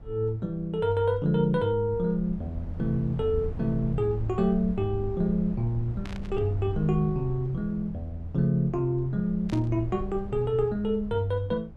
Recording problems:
low-frequency rumble; below 110 Hz, SNR 13 dB
static burst; at 6 s and at 9.5 s; peak -12 dB vs average level

